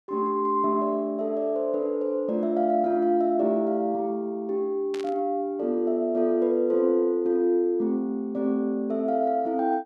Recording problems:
burst of static; at 5 s; peak -11 dB vs average level

